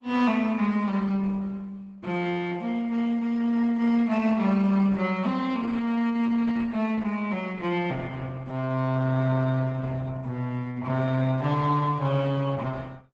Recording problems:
codec artefacts; Opus, log-spectral distance 3 dB, nothing above 7.8 kHz

